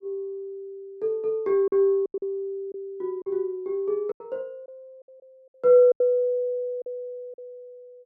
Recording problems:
packet loss; 7% of the sound replaced, filled with silence

